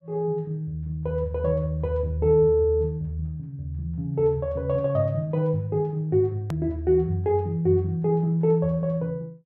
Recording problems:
click at an edit; at 6.5 s

